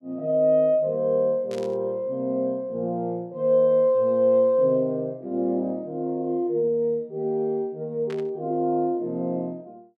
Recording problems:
static burst; at 1.5 s and at 8 s; peak -14 dB vs average level

